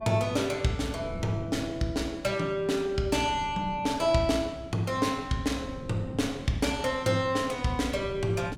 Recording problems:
wind on the microphone; below 240 Hz, SNR 16 dB

